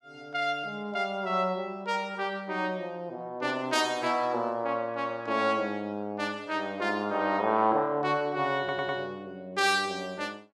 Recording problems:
audio stuttering; at 8.5 s

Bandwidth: 14.5 kHz